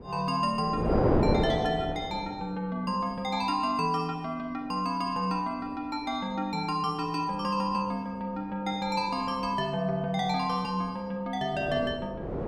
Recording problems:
wind on the microphone; below 550 Hz, SNR 0 dB

